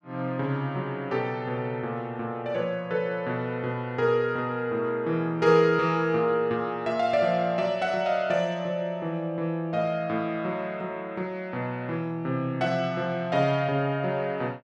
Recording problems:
none

